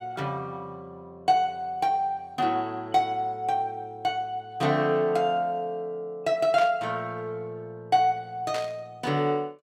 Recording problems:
static burst; at 6.5 s and at 8.5 s; peak -5 dB vs average level

